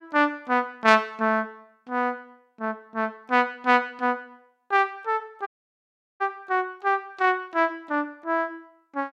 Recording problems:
audio cutting out; at 5.5 s for 0.5 s

